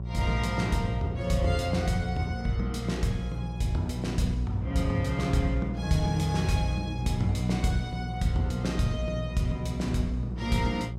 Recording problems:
electrical hum; 60 Hz, harmonics up to 540 Hz, SNR 6 dB

